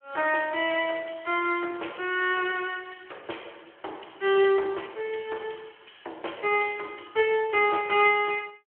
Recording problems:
telephone audio; 280 Hz to 3.2 kHz, Speex

